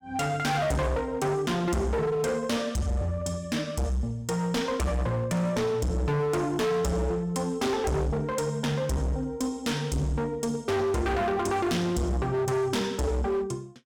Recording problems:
distorted audio; hard clipping, uneven, signal-to-distortion ratio 7 dB

